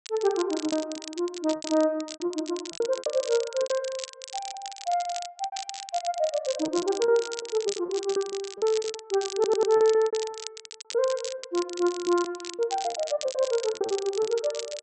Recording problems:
low-pass filter; nothing above 8 kHz
crackle; vinyl, SNR 11 dB
packet loss; 15% of the sound replaced, filled with repeated pitch periods
audio stuttering; at 9.5 s

